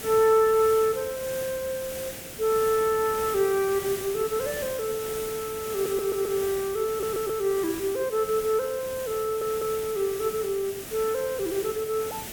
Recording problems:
hiss; SNR 10 dB
audio stuttering; at 5.5 s, at 7 s and at 9 s

